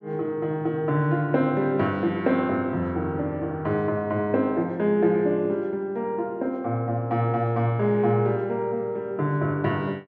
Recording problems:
treble cut off; nothing above 8 kHz

